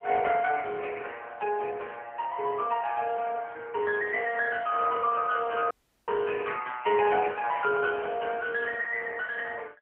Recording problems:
telephone audio; 340 Hz to 3.3 kHz, AMR-NB
dropout; at 5.5 s

